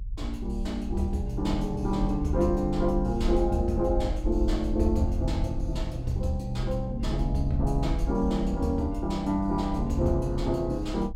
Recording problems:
low-frequency rumble; below 56 Hz, SNR 5 dB

